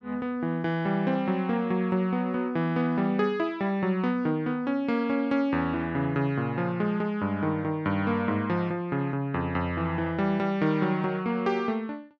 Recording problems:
none

